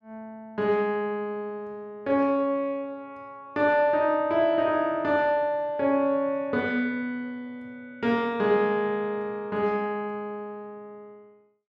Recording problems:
none

